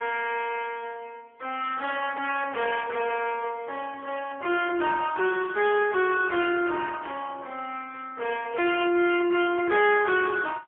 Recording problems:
telephone audio; 300 Hz to 3.4 kHz, AMR-NB, then MP3
distorted audio; soft clipping, signal-to-distortion ratio 12 dB
static burst; 4 times, first at 2 s; peak -15 dB vs average level

